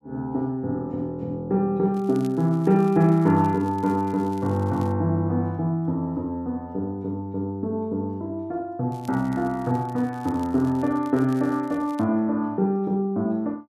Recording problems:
crackle; from 2 to 5 s and from 9 to 12 s; loose cable, SNR 28 dB

